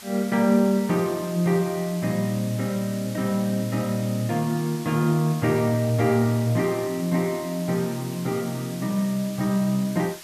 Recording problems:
hiss; slope +1 dB per octave, SNR 16 dB

